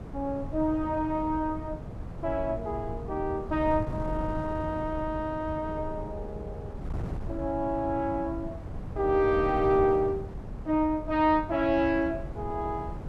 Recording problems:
wind noise; below 190 Hz, SNR 10 dB

